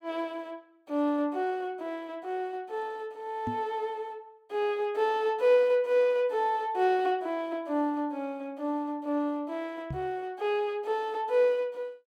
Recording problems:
knock on the microphone; at 3.5 s and at 10 s; peak -2 dB vs average level

